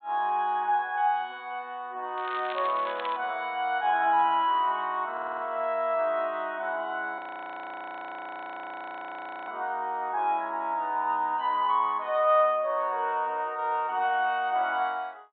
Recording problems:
treble missing; nothing above 4 kHz
crackling; at 2 s; loose cable, SNR 15 dB
stutter; at 5 s
audio freezing; at 7 s for 2.5 s

